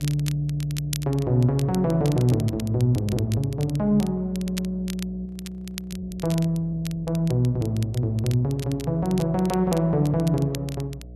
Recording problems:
mains hum; 60 Hz, harmonics up to 660 Hz, SNR 18 dB
crackling; vinyl, SNR 17 dB
stutter; at 4.5 s
audio freezing; at 5.5 s for 0.5 s

